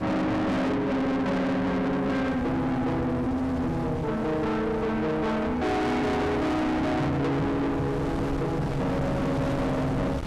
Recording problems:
distortion; soft clipping, signal-to-distortion ratio 6 dB
wind on the microphone; below 750 Hz, SNR 9 dB

